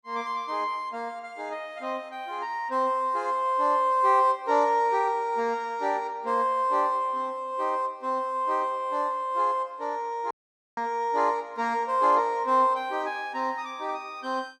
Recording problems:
dropout; at 10 s

